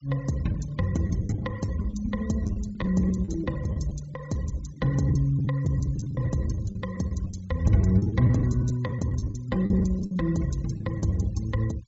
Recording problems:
treble missing; nothing above 8 kHz
noise reduction artefacts; signal-to-artefact ratio 23 dB
lost packets; 11% of the sound replaced, filled with the last packet

